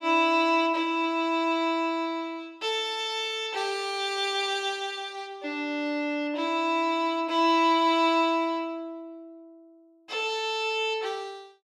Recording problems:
none

